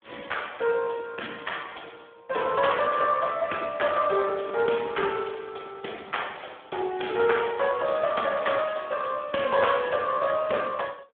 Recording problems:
telephone audio; 260 Hz to 3.4 kHz, Speex

